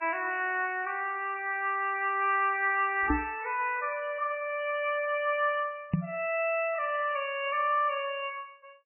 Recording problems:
lossy compression; MP3, log-spectral distance 3 dB, nothing above 2.4 kHz
knock on the microphone; at 3 s and at 6 s; peak +6 dB vs average level

